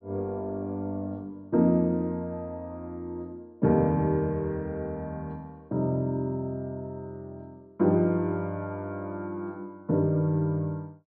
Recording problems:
low-pass filter; nothing above 5.2 kHz

